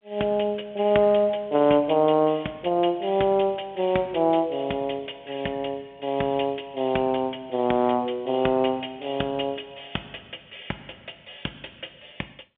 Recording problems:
telephone audio; 220 Hz to 3.5 kHz, G.711

